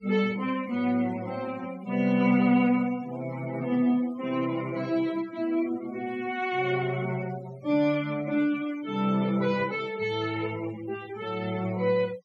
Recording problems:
denoising artefacts; signal-to-artefact ratio 20 dB

